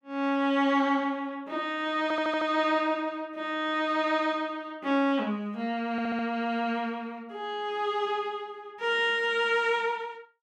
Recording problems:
stutter; at 2 s and at 6 s

